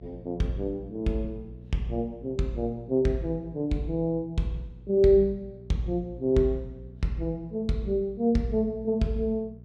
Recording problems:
hum; 60 Hz, harmonics up to 480 Hz, SNR 20 dB

